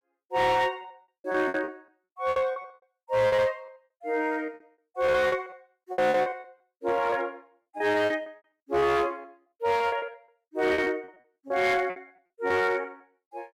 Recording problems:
distortion; hard clipping, uneven, signal-to-distortion ratio 11 dB
packet loss; 16% of the sound replaced, filled with repeated pitch periods

